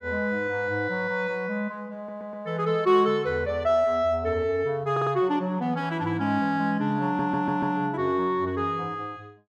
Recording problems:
audio stuttering; at 2 s, at 5 s and at 7 s

